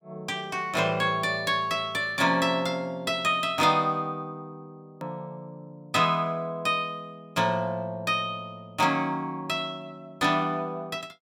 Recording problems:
edit click; at 5 s

